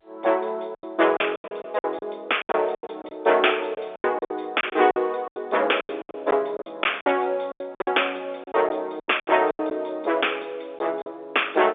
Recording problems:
telephone audio; 340 Hz to 3.6 kHz, G.711
packet loss; 15% of the sound replaced, filled with silence

